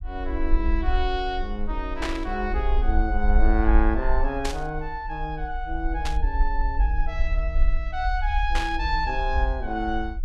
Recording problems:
low-frequency rumble; below 50 Hz, strongest tone 20 Hz, SNR -1 dB
burst of static; 4 times, first at 2 s; peak +2 dB vs average level

